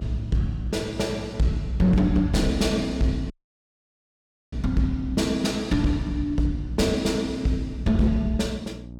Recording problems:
distorted audio; hard clipping, signal-to-distortion ratio 12 dB
electrical hum; 60 Hz, harmonics up to 660 Hz, SNR 16 dB
dropout; at 3.5 s for 1 s

